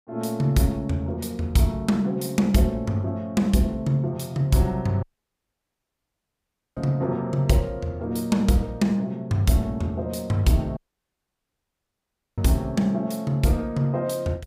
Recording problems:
dropout; at 5 s for 1.5 s and at 11 s for 1.5 s

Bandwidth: 15.5 kHz